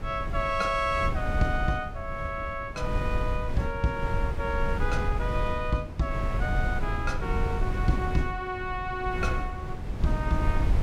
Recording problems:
wind noise; below 110 Hz, SNR 2 dB

